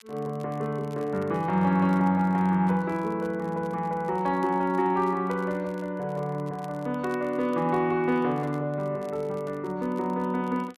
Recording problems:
crackle; vinyl, SNR 30 dB

